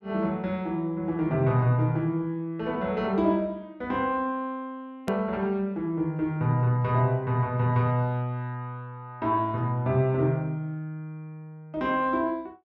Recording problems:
edit click; at 5 s

